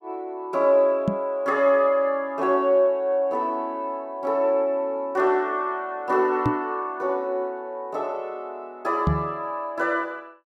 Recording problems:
microphone thump; at 1 s, at 6.5 s and at 9 s; peak +5 dB vs average level

